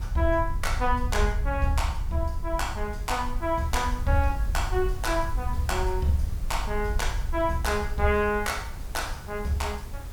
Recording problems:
background hiss; slope -4 dB per octave, SNR 19 dB
wind on the microphone; below 66 Hz, SNR 4 dB

